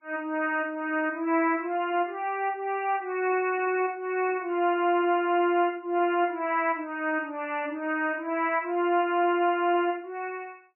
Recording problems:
lossy codec; MP3, log-spectral distance 2 dB, nothing above 2.4 kHz

